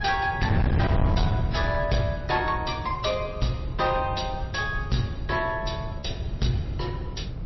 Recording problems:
lossy codec; MP3, log-spectral distance 3 dB, nothing above 5.7 kHz
distorted audio; hard clipping, signal-to-distortion ratio 7 dB
hum; 60 Hz, harmonics up to 2.3 kHz, SNR 26 dB
wind on the microphone; below 150 Hz, SNR 2 dB
lost packets; 0.6% of the sound replaced, filled with repeated pitch periods

